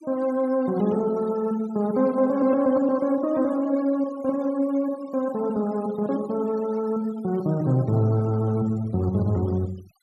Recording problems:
noise reduction artefacts; signal-to-artefact ratio 24 dB

